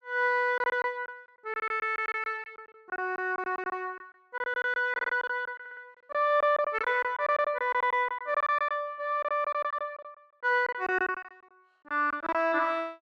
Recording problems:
lost packets; 15% of the sound replaced, filled with silence
audio stuttering; at 5 s and at 5.5 s

